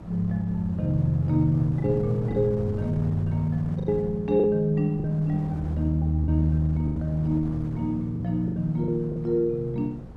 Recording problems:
hum; 60 Hz, harmonics up to 540 Hz, SNR 24 dB
wind noise; below 330 Hz, SNR 15 dB
packet loss; 6% of the sound replaced, filled with the last packet

